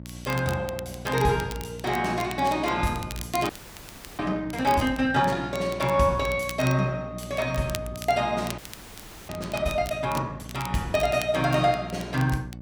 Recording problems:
electrical hum; 60 Hz, harmonics up to 660 Hz, SNR 15 dB
crackling; vinyl, SNR 16 dB
frozen audio; at 3.5 s for 0.5 s and at 8.5 s for 0.5 s

